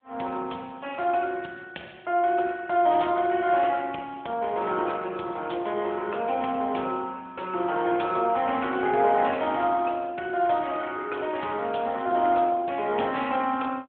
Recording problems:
telephone audio; 300 Hz to 3.4 kHz, AMR-NB

